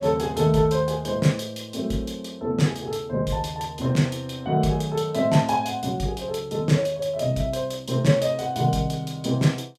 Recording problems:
none

